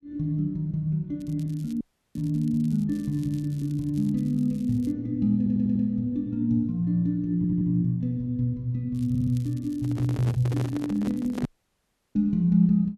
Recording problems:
crackling; at 1 s, from 2 to 5 s and from 9 to 11 s; loose cable, SNR 28 dB
dropout; at 2 s and at 11 s for 0.5 s
stutter; at 5.5 s, at 7.5 s and at 9 s
microphone handling noise; from 10 to 11 s; peak -4 dB vs average level

